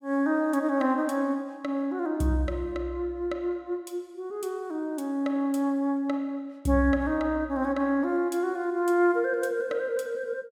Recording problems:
none

